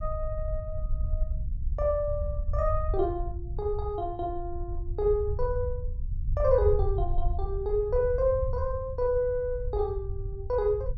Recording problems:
low-frequency rumble; below 74 Hz, SNR 4 dB

